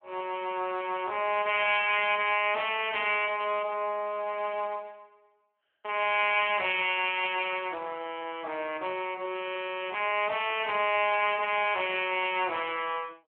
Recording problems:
telephone audio; 220 Hz to 3.3 kHz, Speex

